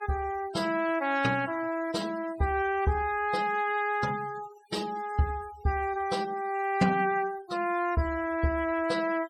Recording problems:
denoising artefacts; signal-to-artefact ratio 18 dB

